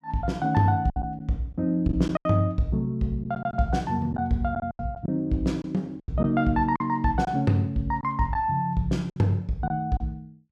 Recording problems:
lost packets; 7% of the sound replaced, filled with silence

